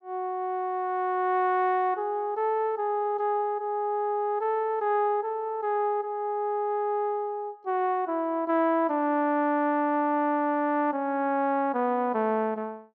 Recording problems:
none

